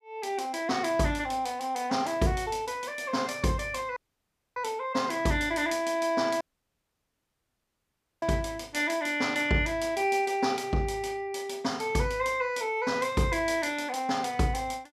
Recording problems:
audio cutting out; at 4 s for 0.5 s and at 6.5 s for 2 s

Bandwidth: 15 kHz